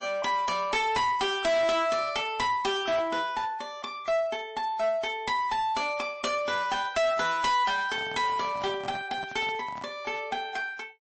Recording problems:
lossy codec; MP3, log-spectral distance 2 dB, nothing above 8 kHz
distorted audio; hard clipping, uneven, signal-to-distortion ratio 6 dB
handling noise; from 8 to 10 s; peak -10 dB vs average level

